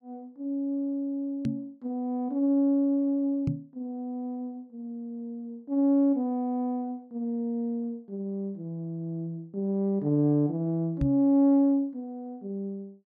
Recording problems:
microphone thump; at 1.5 s, at 3.5 s and at 11 s; peak +3 dB vs average level

